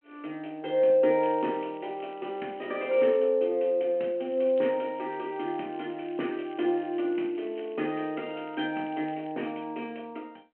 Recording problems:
phone line; 190 Hz to 3.2 kHz, G.726
crackle; from 1 to 3 s and from 4.5 to 9.5 s; loose cable, SNR 27 dB

